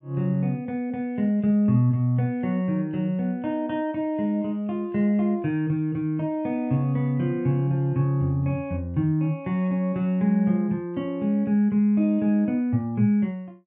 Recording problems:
none

